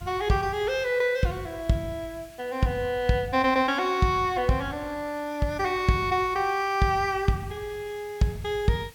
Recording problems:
background hiss; slope 0 dB per octave, SNR 25 dB

